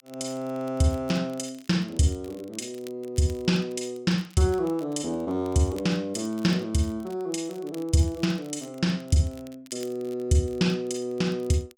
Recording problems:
crackling; vinyl, SNR 25 dB

